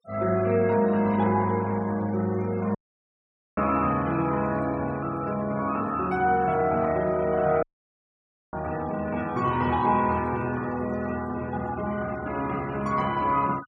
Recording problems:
noise reduction artefacts; signal-to-artefact ratio 20 dB
audio cutting out; at 3 s for 1 s and at 7.5 s for 1 s

